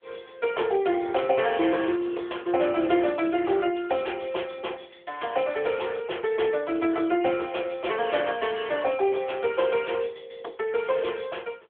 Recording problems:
telephone audio; 280 Hz to 3.4 kHz, AMR-NB

